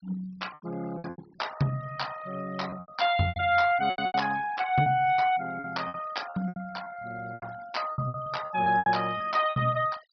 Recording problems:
treble cut off; nothing above 5.5 kHz
denoising artefacts; signal-to-artefact ratio 19 dB
packet loss; 13% of the sound replaced, filled with repeated pitch periods

